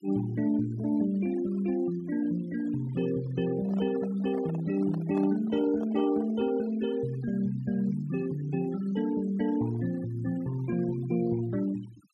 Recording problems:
noise reduction artefacts; signal-to-artefact ratio 20 dB
microphone handling noise; from 3.5 to 6.5 s; peak -9 dB vs average level

